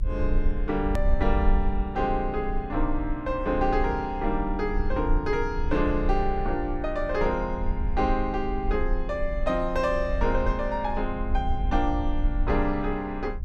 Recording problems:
rumble; below 50 Hz, strongest tone 26 Hz, SNR 4 dB
edit click; at 1 s

